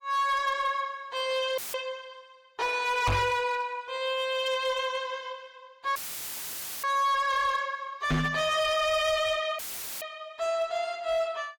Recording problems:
lossy codec; AAC, log-spectral distance 2 dB, nothing above 15.5 kHz
distortion; hard clipping, signal-to-distortion ratio 11 dB
dropout; at 1.5 s, at 6 s for 1 s and at 9.5 s; filled with static
knock on the microphone; at 3 s and at 8 s; peak +4 dB vs average level

